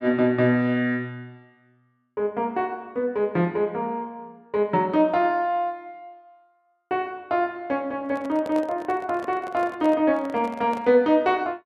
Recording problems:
microphone handling noise; from 8 to 11 s; peak -8 dB vs average level

